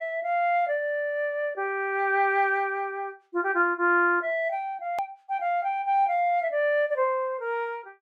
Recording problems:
click at an edit; at 5 s

